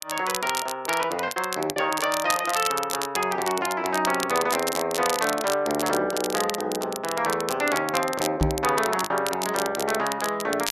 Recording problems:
crackle; vinyl, SNR 7 dB
packet loss; 2% of the sound replaced, filled with the last packet
microphone thump; at 8.5 s; peak +5 dB vs average level

